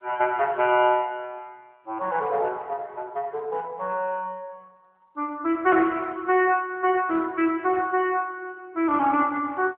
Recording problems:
telephone audio; 260 Hz to 3.2 kHz, AMR-NB

